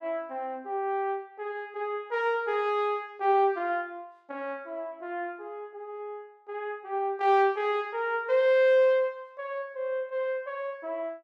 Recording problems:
none

